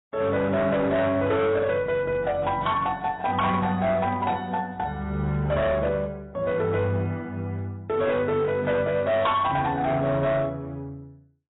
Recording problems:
lossy compression; AAC, log-spectral distance 2 dB, nothing above 3.8 kHz
distortion; hard clipping, signal-to-distortion ratio 11 dB

